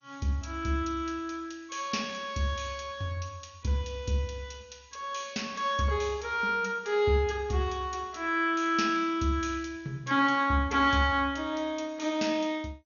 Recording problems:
codec artefacts; MP2, log-spectral distance 3 dB, nothing above 6.7 kHz

